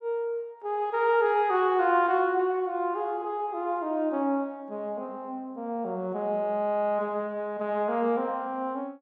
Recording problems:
none

